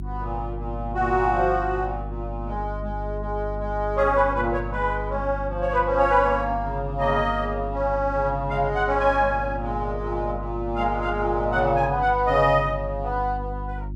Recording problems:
hum; 50 Hz, harmonics up to 350 Hz, SNR 9 dB

